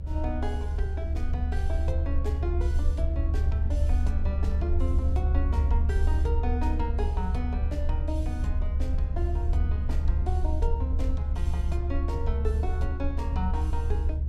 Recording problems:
rumble; below 72 Hz, SNR -8 dB

